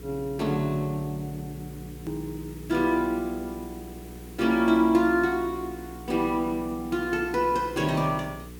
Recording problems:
electrical hum; 60 Hz, harmonics up to 480 Hz, SNR 16 dB
background hiss; slope -1 dB per octave, SNR 23 dB
click at an edit; at 2 s

